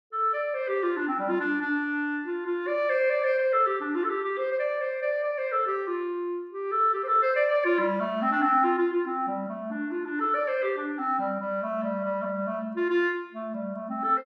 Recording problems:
none

